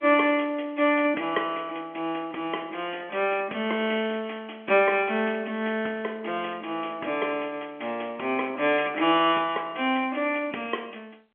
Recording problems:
telephone audio; 240 Hz to 3.4 kHz, G.711

